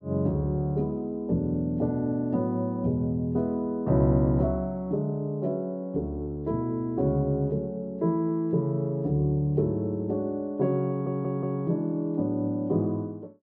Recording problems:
audio stuttering; at 11 s

